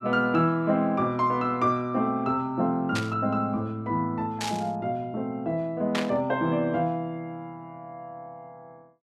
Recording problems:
static burst; at 3 s, at 4.5 s and at 6 s; peak +1 dB vs average level

